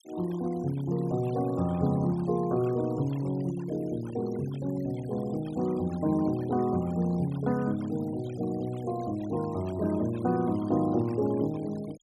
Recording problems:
denoising artefacts; signal-to-artefact ratio 21 dB

